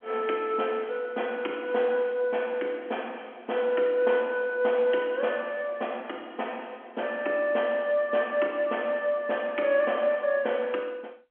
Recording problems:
telephone audio; 260 Hz to 3.3 kHz, G.711

